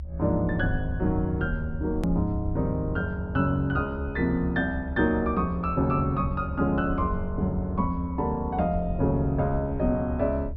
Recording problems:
treble cut off; nothing above 5.6 kHz
low-frequency rumble; below 74 Hz, SNR 8 dB
hard cut with a click; at 2 s

